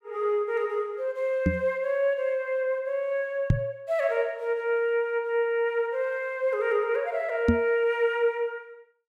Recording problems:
microphone bump; at 1.5 s, at 3.5 s and at 7.5 s; peak +8 dB vs average level

